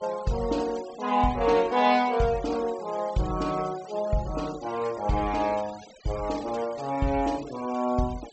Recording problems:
low-pass filter; nothing above 8 kHz
denoising artefacts; signal-to-artefact ratio 19 dB

